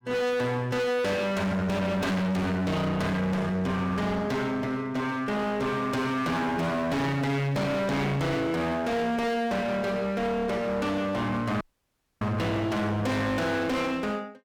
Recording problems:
distortion; hard clipping, uneven, signal-to-distortion ratio 5 dB
audio cutting out; at 12 s for 0.5 s

